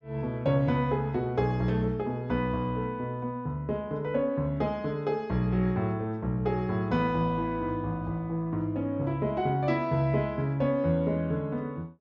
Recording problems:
treble missing; nothing above 8 kHz

